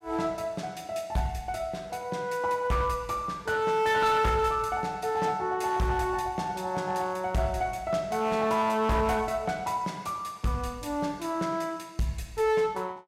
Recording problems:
distorted audio; hard clipping, signal-to-distortion ratio 11 dB

